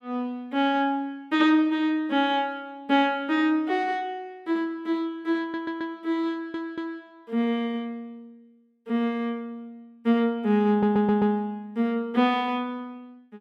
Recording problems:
audio stuttering; at 5.5 s, at 6.5 s and at 11 s

